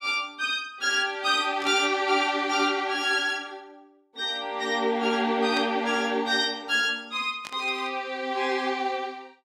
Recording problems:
burst of static; at 1.5 s, at 5.5 s and at 7.5 s; peak -5 dB vs average level

